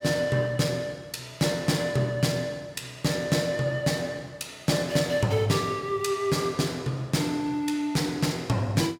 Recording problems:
none

